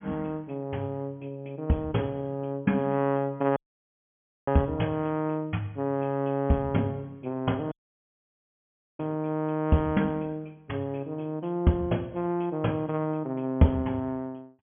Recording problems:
low-pass filter; nothing above 3.4 kHz
audio cutting out; at 3.5 s for 1 s and at 7.5 s for 1.5 s

